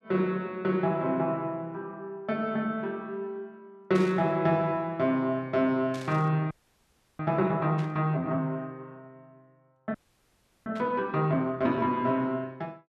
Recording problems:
burst of static; 4 times, first at 4 s; peak -11 dB vs average level
frozen audio; at 6.5 s for 0.5 s and at 10 s for 0.5 s

